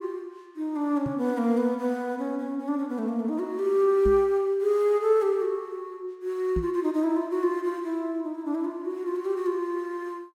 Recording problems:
microphone bump; at 1 s, at 4 s and at 6.5 s; peak -1 dB vs average level

